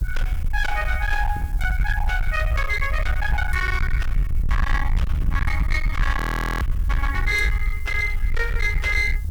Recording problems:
distortion; hard clipping, signal-to-distortion ratio 7 dB
background hiss; SNR 24 dB
rumble; below 66 Hz, SNR 1 dB
frozen audio; at 6 s

